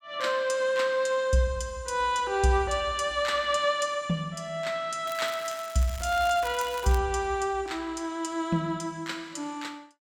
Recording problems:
crackle; from 5 to 7 s; loose cable, SNR 15 dB

